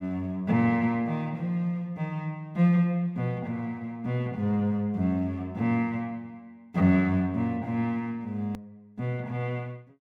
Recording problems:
click at an edit; at 8.5 s

